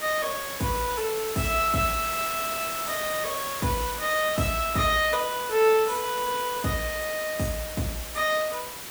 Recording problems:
hiss; slope -1 dB per octave, SNR 7 dB

